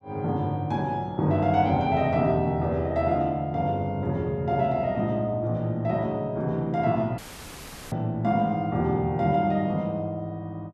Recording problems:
audio cutting out; at 7 s for 0.5 s; filled with static

